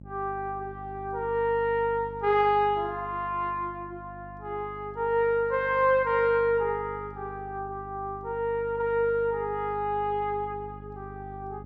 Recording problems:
hum; 50 Hz, harmonics up to 600 Hz, SNR 17 dB

